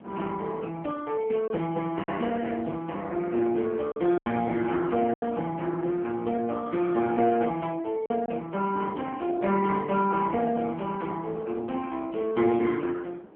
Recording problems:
telephone audio; 170 Hz to 3.3 kHz, AMR-NB
wind on the microphone; below 540 Hz, SNR 20 dB
packet loss; 2% of the sound replaced, filled with silence

